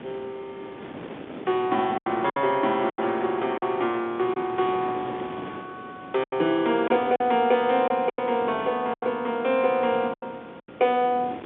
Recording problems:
telephone audio; 190 Hz to 3.7 kHz, G.711
hiss; SNR 28 dB
wind on the microphone; below 770 Hz, SNR 16 dB
lost packets; 7% of the sound replaced, filled with silence

